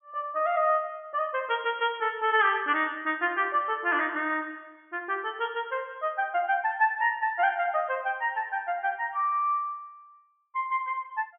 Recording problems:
treble cut off; nothing above 3.3 kHz

